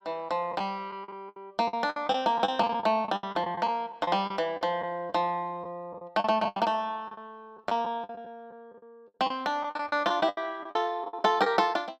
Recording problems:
packet loss; 14% of the sound replaced, filled with the last packet

